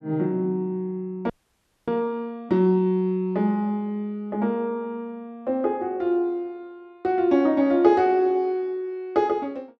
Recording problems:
audio freezing; at 1.5 s for 0.5 s

